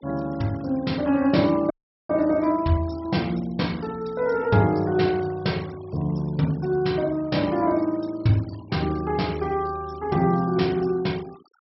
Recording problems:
treble cut off; nothing above 5.5 kHz
denoising artefacts; signal-to-artefact ratio 23 dB
audio cutting out; at 1.5 s

